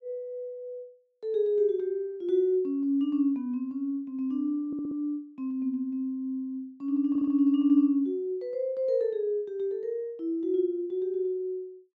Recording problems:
audio stuttering; at 4.5 s and at 7 s

